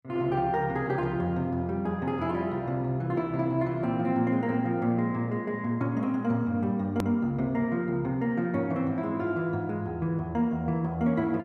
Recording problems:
edit click; at 7 s

